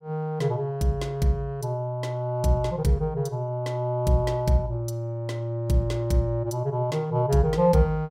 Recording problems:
none

